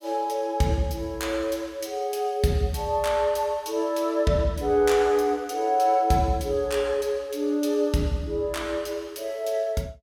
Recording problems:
none

